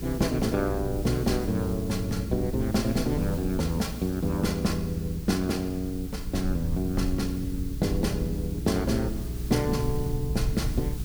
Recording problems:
electrical hum; 60 Hz, harmonics up to 420 Hz, SNR 10 dB
background hiss; slope 0 dB per octave, SNR 17 dB
low-frequency rumble; below 92 Hz, SNR 9 dB

